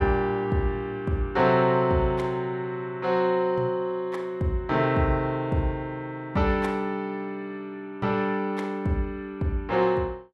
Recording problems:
none

